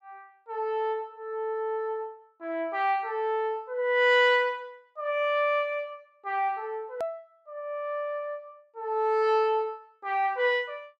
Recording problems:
click at an edit; at 7 s

